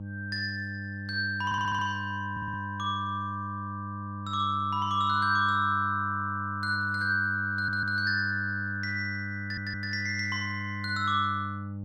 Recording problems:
hum; 50 Hz, harmonics up to 600 Hz, SNR 9 dB
audio stuttering; 4 times, first at 1.5 s

